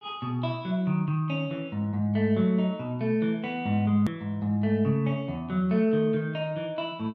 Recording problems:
click at an edit; at 4 s

